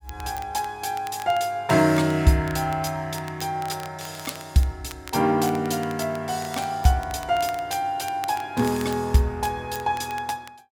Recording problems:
crackle; vinyl, SNR 19 dB

